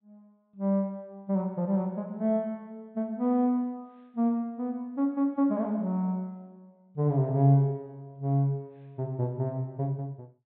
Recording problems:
treble cut off; nothing above 4 kHz

